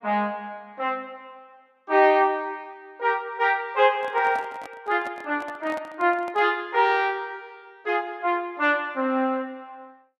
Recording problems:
handling noise; from 4 to 6.5 s; peak -11 dB vs average level

